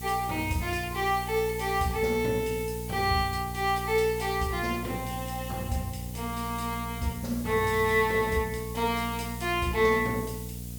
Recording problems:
electrical hum; 60 Hz, harmonics up to 540 Hz, SNR 10 dB
background hiss; slope +5 dB per octave, SNR 14 dB

